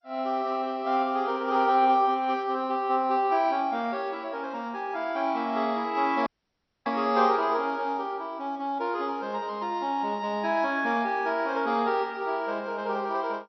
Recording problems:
lossy compression; MP2, log-spectral distance 2 dB, nothing above 5.8 kHz
audio cutting out; at 6.5 s for 0.5 s

